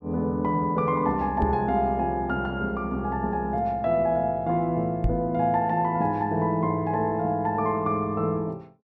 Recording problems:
microphone bump; at 1.5 s and at 5 s; peak +3 dB vs average level

